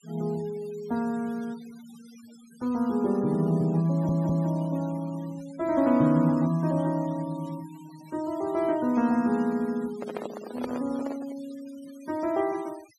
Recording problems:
denoising artefacts; signal-to-artefact ratio 23 dB
audio stuttering; at 4 s
handling noise; from 10 to 11 s; peak -2 dB vs average level

